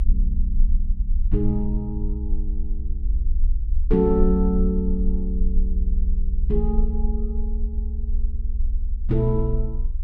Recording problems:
low-frequency rumble; below 52 Hz, strongest tone 26 Hz, SNR 0 dB

